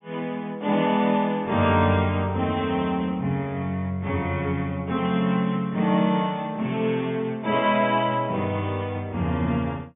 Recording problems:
treble cut off; nothing above 3.6 kHz

